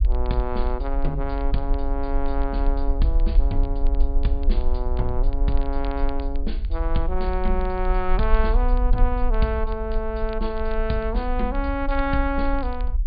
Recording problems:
treble missing; nothing above 4.8 kHz
low-frequency rumble; below 44 Hz, SNR -1 dB
crackle; vinyl, SNR 25 dB

